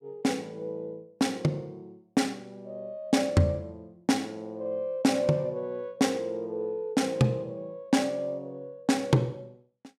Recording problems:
none

